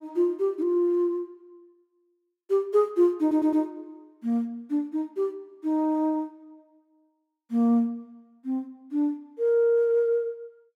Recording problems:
audio stuttering; at 3 s

